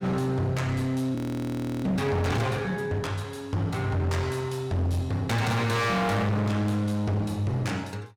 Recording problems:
distortion; hard clipping, uneven, signal-to-distortion ratio 7 dB
frozen audio; at 1 s for 0.5 s

